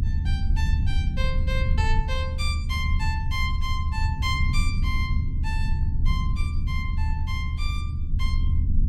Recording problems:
rumble; below 82 Hz, SNR -7 dB

